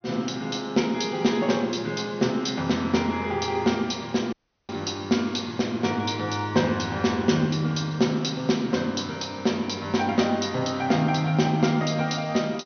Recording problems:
treble cut off; nothing above 6.3 kHz
audio cutting out; at 4.5 s

